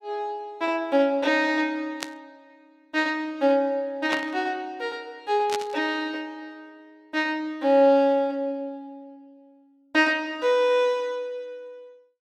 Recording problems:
static burst; at 2 s, at 4 s and at 5.5 s; peak -1 dB vs average level

